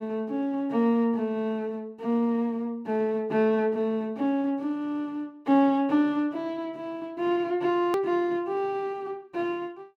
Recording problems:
click at an edit; at 8 s

